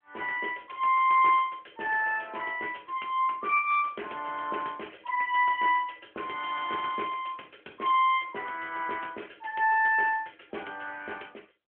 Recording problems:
telephone audio; 300 Hz to 3.3 kHz, AMR-NB

